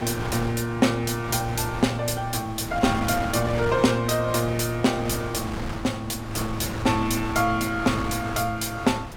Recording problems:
wind noise; below 1.1 kHz, SNR 10 dB

